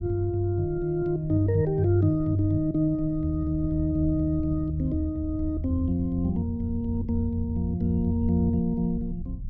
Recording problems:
rumble; below 94 Hz, SNR 13 dB

